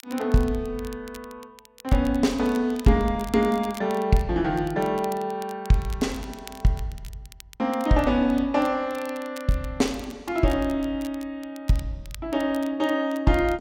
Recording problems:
crackling; vinyl, SNR 22 dB

